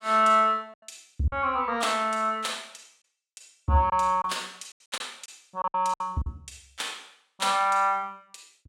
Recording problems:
packet loss; 5% of the sound replaced, filled with silence

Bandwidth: 16.5 kHz